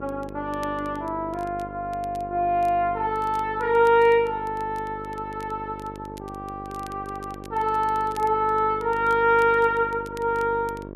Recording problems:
electrical hum; 50 Hz, harmonics up to 1.2 kHz, SNR 15 dB
crackling; vinyl, SNR 28 dB

